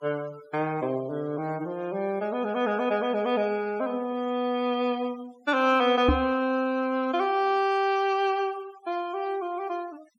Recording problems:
noise reduction artefacts; signal-to-artefact ratio 23 dB
knock on the microphone; at 6 s; peak +7 dB vs average level

